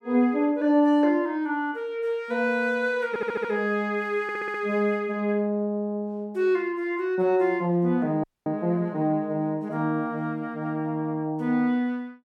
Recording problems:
stutter; at 3 s and at 4 s
frozen audio; at 8 s

